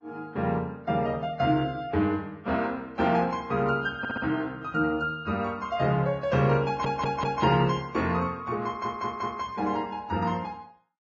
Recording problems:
codec artefacts; Vorbis, log-spectral distance 2 dB, nothing above 6 kHz
stutter; at 4 s, at 6.5 s and at 8.5 s

